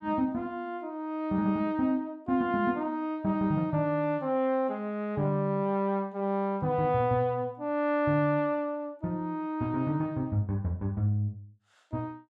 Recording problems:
none

